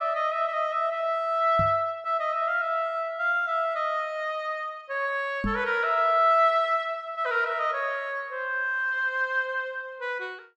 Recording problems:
microphone thump; at 1.5 s and at 5.5 s; peak 0 dB vs average level

